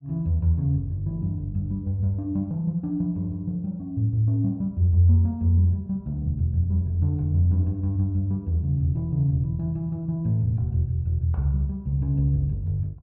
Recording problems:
none

